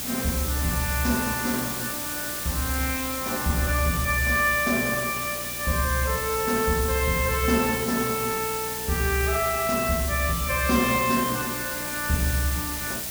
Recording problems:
hum; 60 Hz, harmonics up to 720 Hz, SNR 20 dB
background hiss; slope -1 dB per octave, SNR 4 dB

